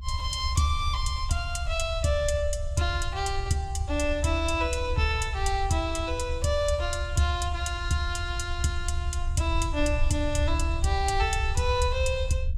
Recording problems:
low-frequency rumble; below 74 Hz, SNR 4 dB

